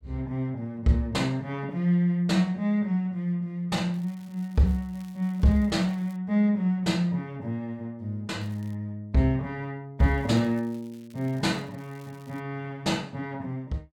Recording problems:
crackle; from 4 to 6 s, at 8.5 s and from 10 to 12 s; loose cable, SNR 30 dB

